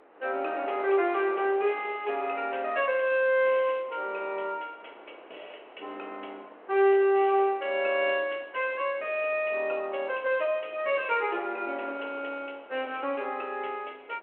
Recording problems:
telephone audio; 280 Hz to 3.1 kHz, G.726
wind on the microphone; below 1.2 kHz, SNR 20 dB

